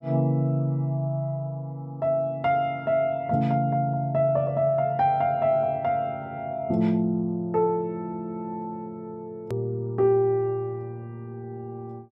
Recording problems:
click at an edit; at 9.5 s

